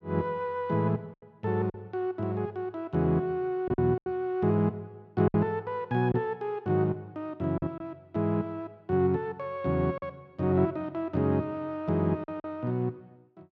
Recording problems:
lost packets; 4% of the sound replaced, filled with silence

